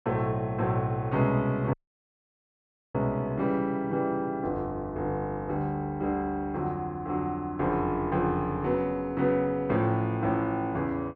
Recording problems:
audio cutting out; at 1.5 s for 1 s

